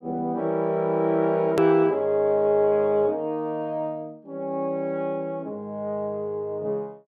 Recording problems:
edit click; at 1.5 s

